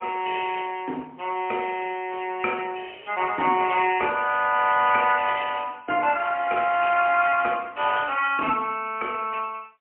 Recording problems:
phone line; 220 Hz to 3.2 kHz, AMR-NB, then MP3

